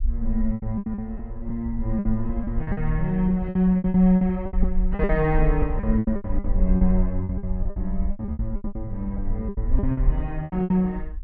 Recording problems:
rumble; below 50 Hz, SNR 5 dB
lost packets; 18% of the sound replaced, filled with repeated pitch periods

